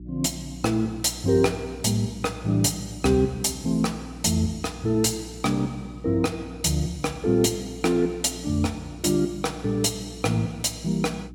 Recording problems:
hum; 60 Hz, harmonics up to 360 Hz, SNR 16 dB

